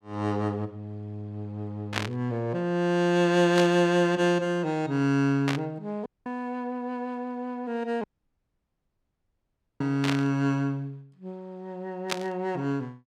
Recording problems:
burst of static; 5 times, first at 2 s; peak +4 dB vs average level
audio cutting out; at 6 s and at 8 s for 2 s

